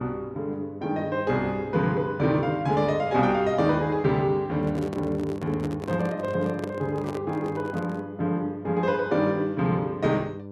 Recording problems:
electrical hum; 50 Hz, harmonics up to 1.1 kHz, SNR 14 dB
handling noise; from 4.5 to 8 s; peak -4 dB vs average level

